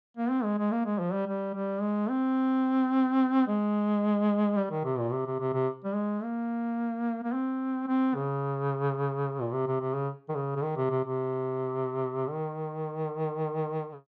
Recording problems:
none

